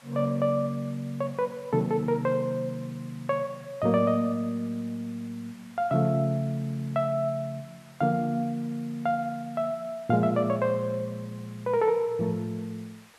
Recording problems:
background hiss; SNR 25 dB

